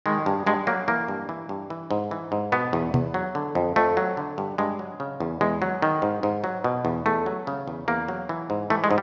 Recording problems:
microphone bump; at 3 s; peak +6 dB vs average level

